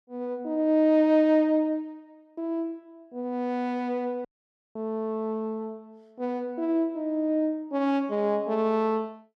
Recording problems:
dropout; at 4.5 s for 0.5 s

